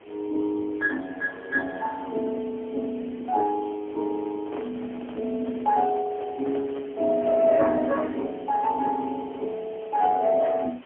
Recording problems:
telephone audio; 240 Hz to 3.3 kHz, AMR-NB, then MP3
hiss; SNR 22 dB
microphone handling noise; from 4.5 to 7 s; peak -7 dB vs average level

